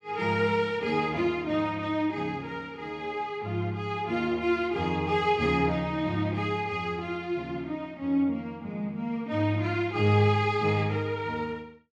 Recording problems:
none

